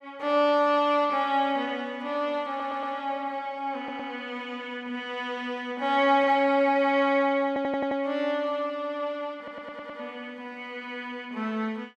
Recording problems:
stutter; 4 times, first at 2.5 s

